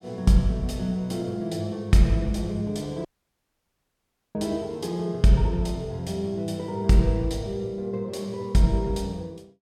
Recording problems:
audio cutting out; at 3 s for 1.5 s

